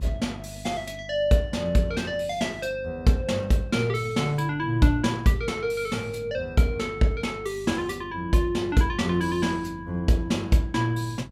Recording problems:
hum; 50 Hz, harmonics up to 600 Hz, SNR 20 dB

